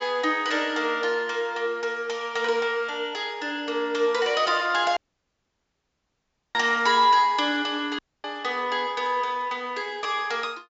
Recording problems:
low-pass filter; nothing above 7.5 kHz
dropout; at 5 s for 1.5 s and at 8 s

